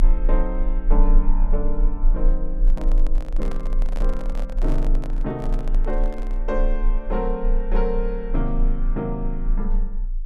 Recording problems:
rumble; below 30 Hz, strongest tone 26 Hz, SNR -4 dB
handling noise; from 2.5 to 6.5 s; peak -2 dB vs average level

